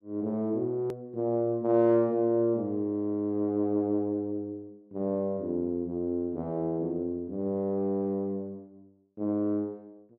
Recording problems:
hard cut with a click; at 1 s

